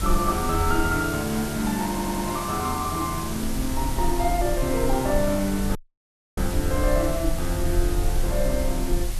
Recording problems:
background hiss; slope -1 dB per octave, SNR 9 dB
low-frequency rumble; below 52 Hz, SNR 6 dB
stutter; at 2 s
audio cutting out; at 6 s for 0.5 s

